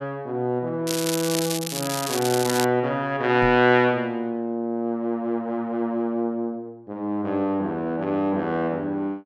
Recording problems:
crackle; from 1 to 2.5 s; loose cable, SNR 5 dB
microphone thump; at 3.5 s; peak 0 dB vs average level

